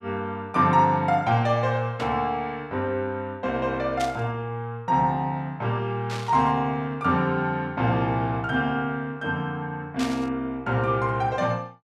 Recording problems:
burst of static; 4 times, first at 2 s; peak -5 dB vs average level

